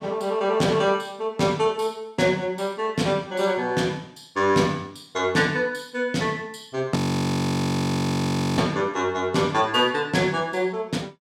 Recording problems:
audio freezing; at 7 s for 1.5 s

